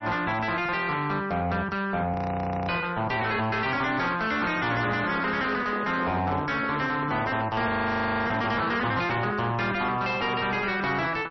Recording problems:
lossy compression; MP3, log-spectral distance 3 dB, nothing above 5.8 kHz
distorted audio; soft clipping, signal-to-distortion ratio 7 dB
audio freezing; at 2 s for 0.5 s and at 7.5 s for 0.5 s
handling noise; from 4.5 to 8.5 s; peak -4 dB vs average level

